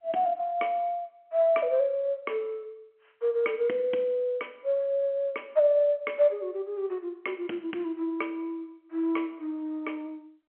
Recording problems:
telephone audio; 260 Hz to 3.5 kHz, G.711

